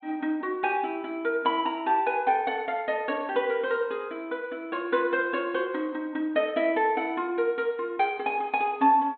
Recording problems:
low-pass filter; nothing above 4 kHz

